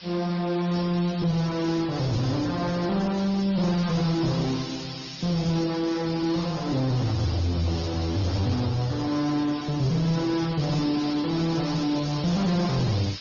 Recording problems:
codec artefacts; MP3, then Opus, log-spectral distance 15 dB
distorted audio; soft clipping, signal-to-distortion ratio 9 dB
hiss; SNR 12 dB
crackle; at 3 s and from 11 to 12 s; loose cable, SNR 27 dB
microphone handling noise; from 9.5 to 12 s; peak -8 dB vs average level

